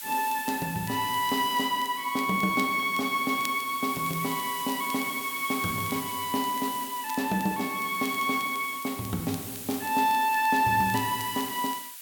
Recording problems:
background hiss; slope +4 dB per octave, SNR 10 dB
crackling; vinyl, SNR 21 dB

